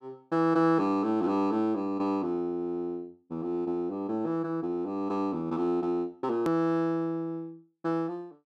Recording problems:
edit click; at 6.5 s

